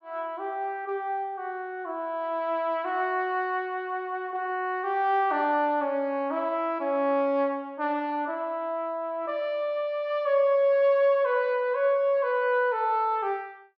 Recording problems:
none

